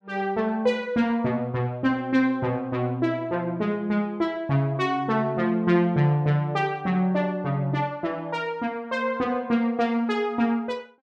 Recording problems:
none

